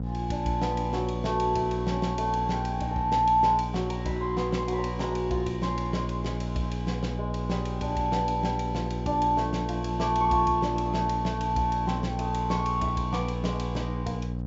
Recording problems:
treble missing; nothing above 7.5 kHz
hum; 60 Hz, harmonics up to 540 Hz, SNR 4 dB

